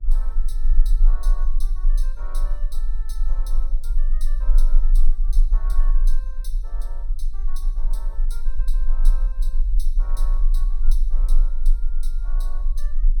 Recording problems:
hum; 60 Hz, harmonics up to 960 Hz, SNR 20 dB
low-frequency rumble; below 32 Hz, strongest tone 20 Hz, SNR -21 dB

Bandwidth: 17 kHz